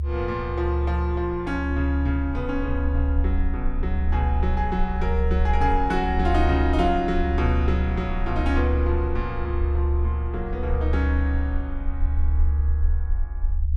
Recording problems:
low-frequency rumble; below 72 Hz, strongest tone 72 Hz, SNR -1 dB

